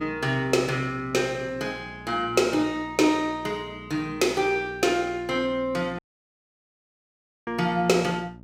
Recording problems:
hum; 60 Hz, harmonics up to 960 Hz, SNR 20 dB
audio cutting out; at 6 s for 1.5 s

